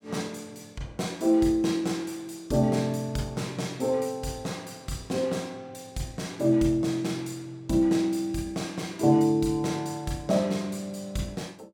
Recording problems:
none

